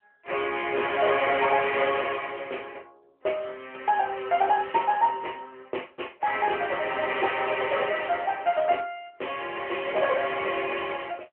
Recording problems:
telephone audio; 320 Hz to 3.1 kHz, AMR-NB

